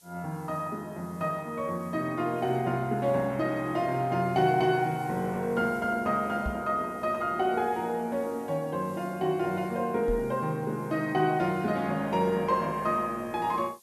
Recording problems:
hiss; SNR 27 dB
knock on the microphone; at 6.5 s and at 10 s; peak -1 dB vs average level

